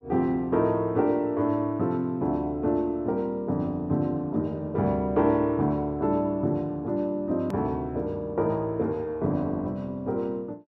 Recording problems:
click at an edit; at 7.5 s

